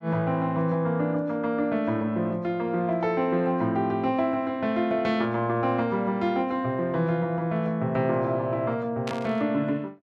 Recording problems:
burst of static; at 9 s; peak -5 dB vs average level

